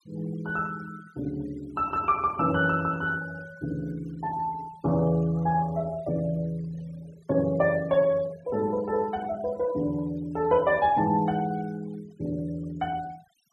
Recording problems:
denoising artefacts; signal-to-artefact ratio 23 dB

